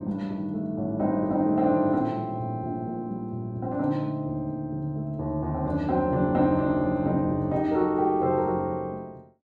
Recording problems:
none

